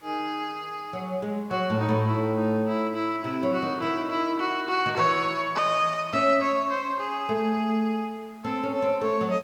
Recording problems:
hiss; slope -3 dB per octave, SNR 30 dB

